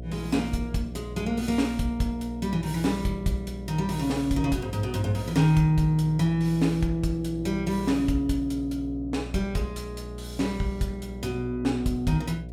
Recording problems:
electrical hum; 60 Hz, harmonics up to 720 Hz, SNR 12 dB

